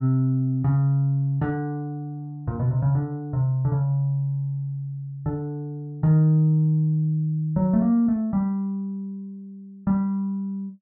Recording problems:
none

